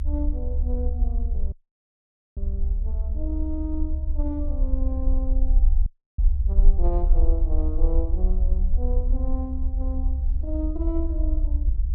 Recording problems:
rumble; below 64 Hz, SNR -9 dB
wind noise; below 66 Hz, SNR 7 dB
audio cutting out; at 1.5 s for 1 s and at 6 s

